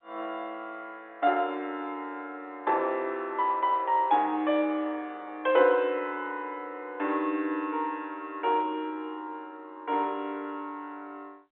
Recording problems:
phone line; 260 Hz to 3.6 kHz, G.711

